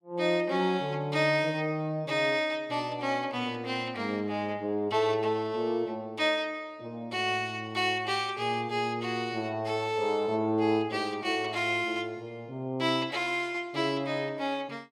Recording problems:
none

